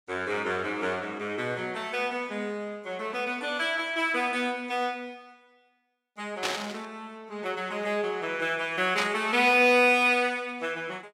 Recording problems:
burst of static; at 6.5 s and at 9 s; peak +2 dB vs average level

